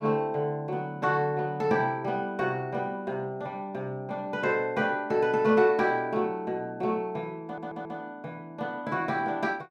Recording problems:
stutter; at 7.5 s

